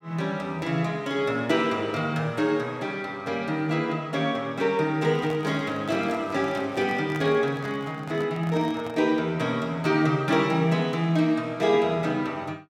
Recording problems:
handling noise; from 5 to 9 s; peak -8 dB vs average level

